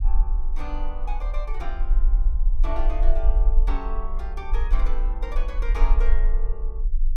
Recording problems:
rumble; below 40 Hz, strongest tone 20 Hz, SNR -11 dB

